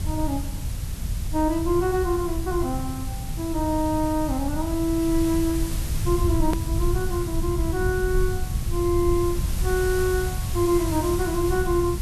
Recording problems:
background hiss; slope -1 dB per octave, SNR 12 dB
rumble; below 100 Hz, SNR 4 dB
edit click; at 6.5 s

